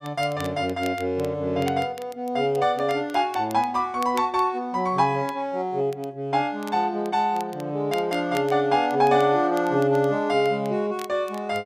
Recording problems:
crackling; vinyl, SNR 22 dB

